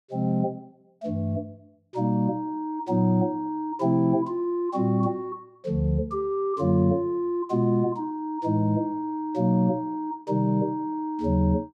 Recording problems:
none

